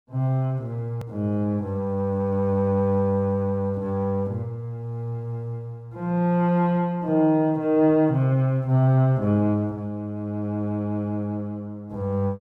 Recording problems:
click at an edit; at 1 s

